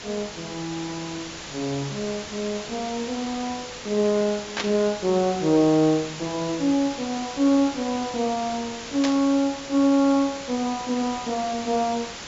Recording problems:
treble cut off; nothing above 7.4 kHz
background hiss; slope -1 dB per octave, SNR 11 dB
static burst; at 4.5 s and at 9 s; peak +2 dB vs average level

